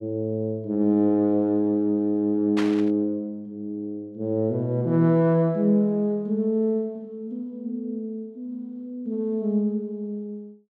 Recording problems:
static burst; at 2.5 s; peak -3 dB vs average level

